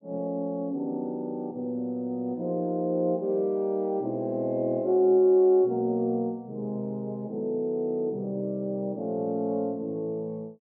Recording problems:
none

